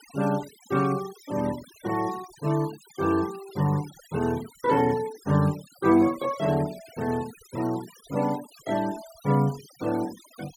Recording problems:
noise reduction artefacts; signal-to-artefact ratio 18 dB

